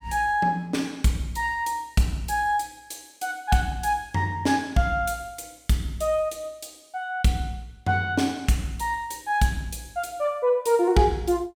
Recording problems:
none

